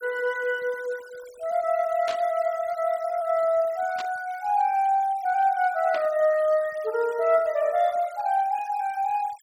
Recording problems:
denoising artefacts; signal-to-artefact ratio 23 dB
static burst; at 2 s, at 4 s and at 6 s; peak -7 dB vs average level

